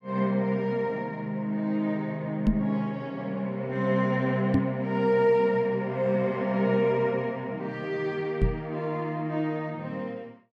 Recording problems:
microphone thump; at 2.5 s, at 4.5 s and at 8.5 s; peak +6 dB vs average level

